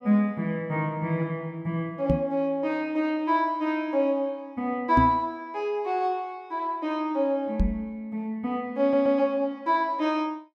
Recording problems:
knock on the microphone; at 2 s, at 5 s and at 7.5 s; peak +7 dB vs average level
stutter; at 9 s

